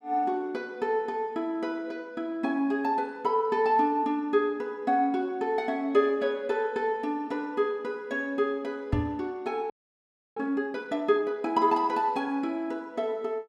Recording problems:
microphone thump; at 9 s; peak +4 dB vs average level
audio freezing; at 9.5 s for 0.5 s

